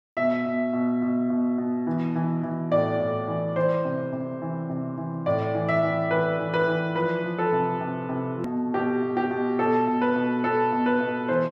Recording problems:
edit click; at 8.5 s

